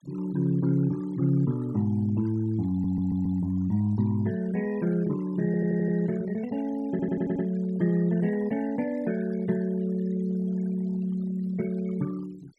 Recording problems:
denoising artefacts; signal-to-artefact ratio 21 dB
stutter; at 2.5 s, at 5.5 s and at 7 s

